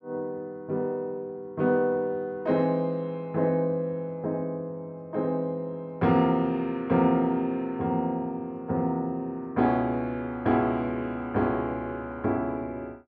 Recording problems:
treble cut off; nothing above 7.8 kHz

